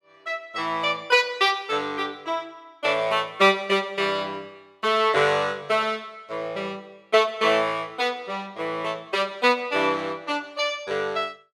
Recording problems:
none

